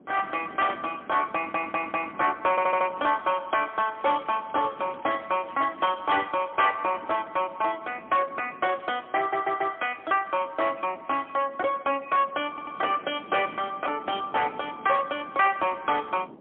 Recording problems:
telephone audio; 260 Hz to 3.3 kHz, AMR-NB, then MP3
distortion; hard clipping, uneven, signal-to-distortion ratio 12 dB
wind on the microphone; below 900 Hz, SNR 21 dB
stutter; 4 times, first at 1.5 s
crackle; from 3 to 6 s; loose cable, SNR 26 dB

